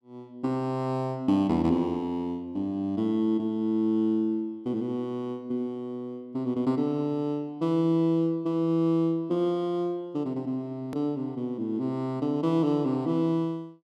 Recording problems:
edit click; at 11 s

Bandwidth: 13.5 kHz